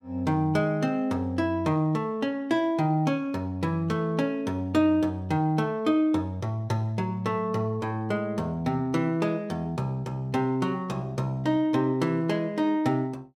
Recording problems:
none

